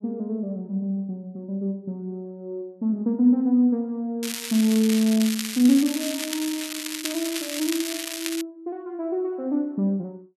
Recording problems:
crackle; from 4 to 8.5 s; loose cable, SNR 6 dB

